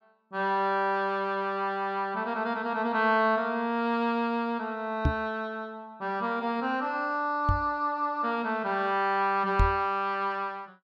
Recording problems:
microphone bump; at 5 s, at 7.5 s and at 9.5 s; peak +6 dB vs average level

